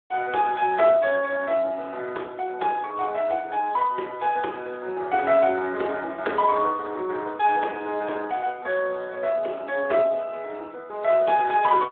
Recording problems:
phone line; 300 Hz to 3.5 kHz, Speex

